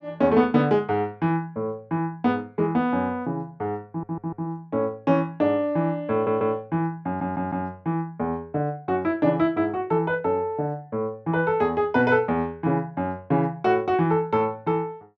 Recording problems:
audio stuttering; at 4 s, at 6 s and at 7 s

